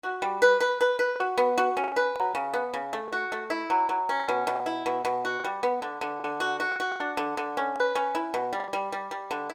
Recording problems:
packet loss; 7% of the sound replaced, filled with the last packet

